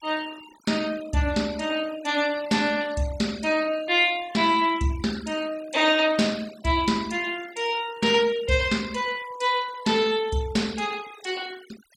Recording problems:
noise reduction artefacts; signal-to-artefact ratio 19 dB

